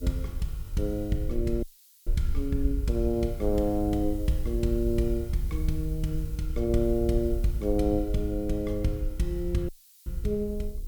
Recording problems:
hum; 50 Hz, harmonics up to 500 Hz, SNR 25 dB
background hiss; slope +7 dB per octave, SNR 22 dB
low-frequency rumble; below 64 Hz, SNR 5 dB
dropout; at 1.5 s and at 9.5 s

